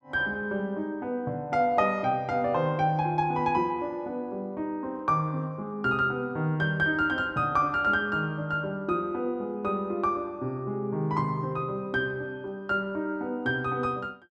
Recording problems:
none

